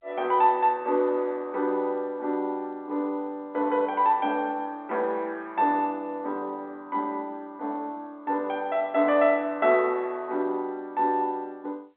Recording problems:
phone line; 260 Hz to 3.6 kHz, G.711

